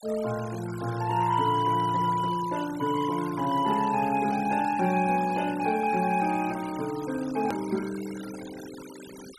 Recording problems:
denoising artefacts; signal-to-artefact ratio 17 dB
hard cut with a click; at 7.5 s

